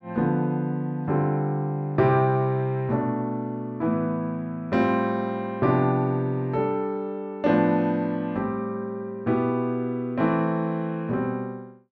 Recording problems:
none

